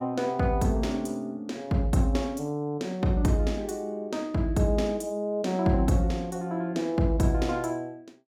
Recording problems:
none

